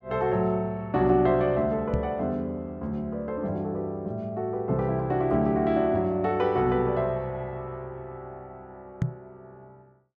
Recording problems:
microphone thump; at 2 s and at 9 s; peak +4 dB vs average level

